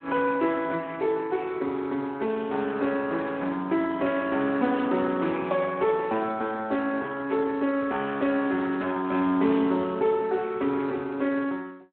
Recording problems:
telephone audio; 190 Hz to 3.7 kHz, Speex

